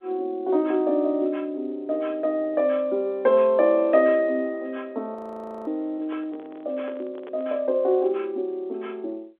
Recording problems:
telephone audio; 240 Hz to 3.6 kHz, G.711
audio freezing; at 5 s for 0.5 s
microphone handling noise; from 6 to 7.5 s; peak -12 dB vs average level

